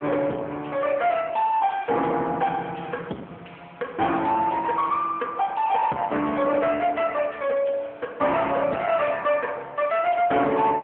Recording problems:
phone line; 240 Hz to 3.3 kHz, AMR-NB
distortion; soft clipping, signal-to-distortion ratio 11 dB

